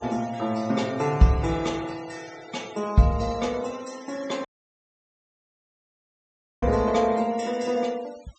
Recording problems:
treble cut off; nothing above 8 kHz
denoising artefacts; signal-to-artefact ratio 21 dB
dropout; at 4.5 s for 2 s

